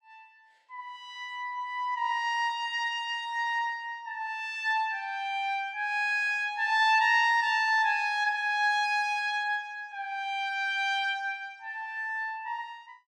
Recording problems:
none

